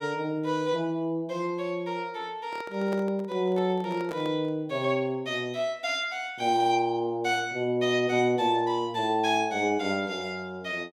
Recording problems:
microphone handling noise; from 2.5 to 4.5 s; peak -6 dB vs average level

